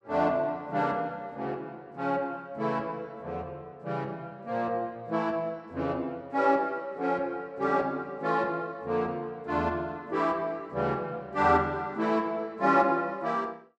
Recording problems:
none

